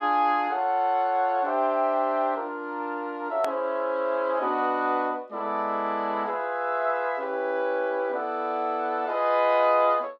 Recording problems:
edit click; at 3.5 s

